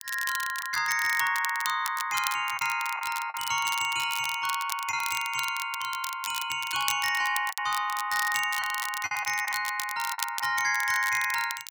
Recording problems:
crackle; vinyl, SNR 9 dB
lost packets; 4% of the sound replaced, filled with the last packet

